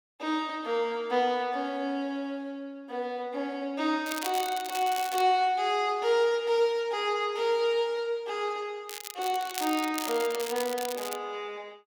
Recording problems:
crackle; from 4 to 5 s and from 9 to 11 s; loose cable, SNR 9 dB

